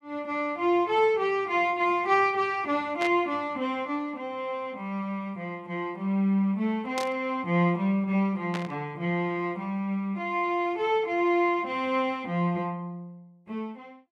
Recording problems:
static burst; at 3 s, at 7 s and at 8.5 s; peak -4 dB vs average level

